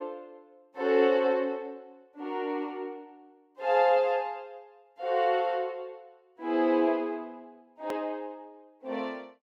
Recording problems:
click at an edit; at 8 s

